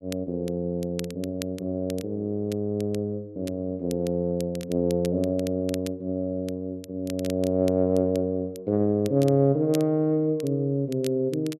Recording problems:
crackling; vinyl, SNR 19 dB

